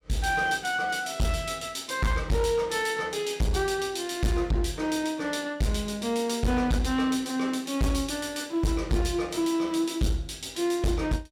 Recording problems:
distorted audio; hard clipping, uneven, signal-to-distortion ratio 6 dB

